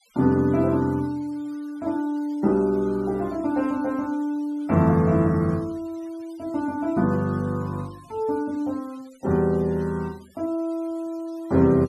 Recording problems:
noise reduction artefacts; signal-to-artefact ratio 27 dB

